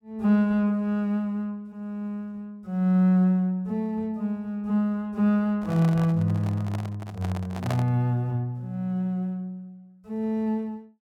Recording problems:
microphone handling noise; from 5.5 to 8 s; peak -2 dB vs average level

